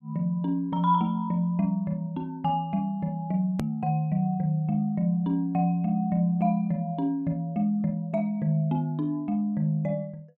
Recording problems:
hard cut with a click; at 3.5 s

